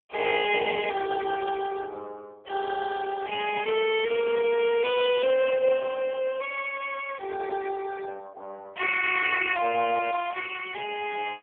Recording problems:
telephone audio; 340 Hz to 3.3 kHz, AMR-NB
crackling; at 5 s and at 10 s; loose cable, SNR 28 dB

